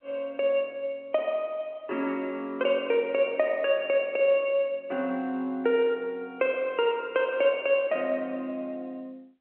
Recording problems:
phone line; 280 Hz to 3.1 kHz, G.711

